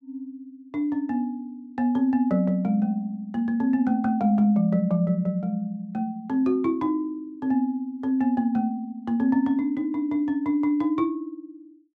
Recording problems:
none

